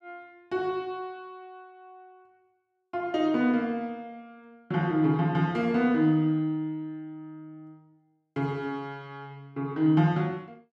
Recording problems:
none

